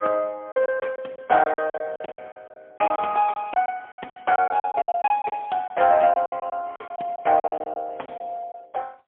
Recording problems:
phone line; 280 Hz to 3.4 kHz, AMR-NB, then MP3
lost packets; 16% of the sound replaced, filled with silence

